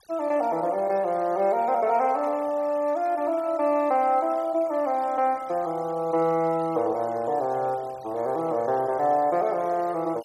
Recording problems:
noise reduction artefacts; signal-to-artefact ratio 25 dB

